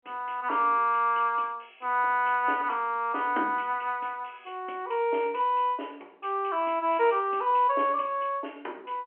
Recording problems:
telephone audio; 280 Hz to 3.3 kHz, G.711

